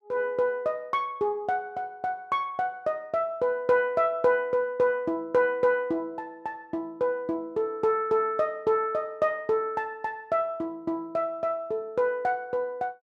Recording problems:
none

